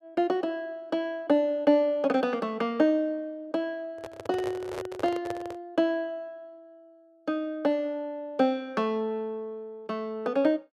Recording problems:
handling noise; from 4 to 5.5 s; peak -4 dB vs average level

